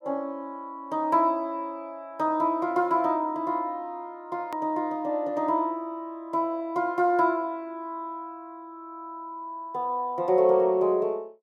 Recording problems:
edit click; at 4.5 s

